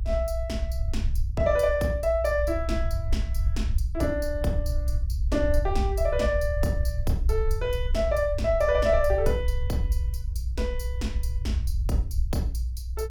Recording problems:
rumble; below 64 Hz, SNR 2 dB

